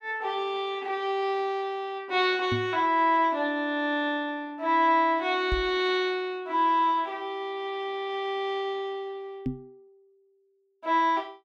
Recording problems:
knock on the microphone; at 2.5 s, at 5.5 s and at 9.5 s; peak 0 dB vs average level

